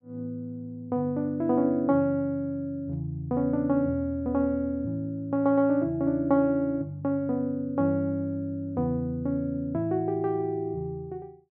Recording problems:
none

